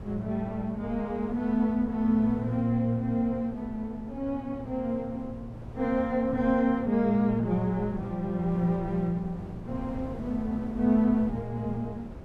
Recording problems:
wind on the microphone; below 300 Hz, SNR 15 dB

